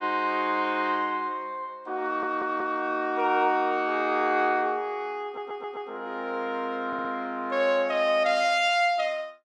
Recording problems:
stutter; at 2 s, at 5 s and at 7 s

